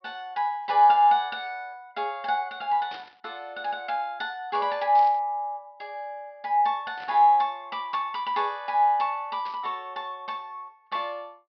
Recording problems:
low-pass filter; nothing above 5.5 kHz
static burst; 4 times, first at 3 s; peak -13 dB vs average level

